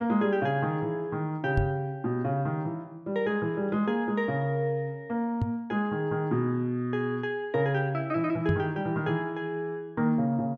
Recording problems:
knock on the microphone; at 1.5 s, at 5.5 s and at 8.5 s; peak +6 dB vs average level

